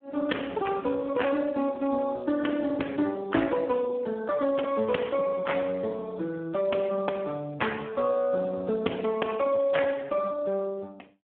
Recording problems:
telephone audio; 190 Hz to 3.3 kHz, Speex

